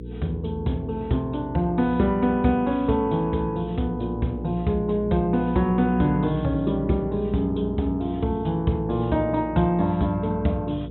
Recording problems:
treble missing; nothing above 4 kHz
hum; 60 Hz, harmonics up to 480 Hz, SNR 11 dB

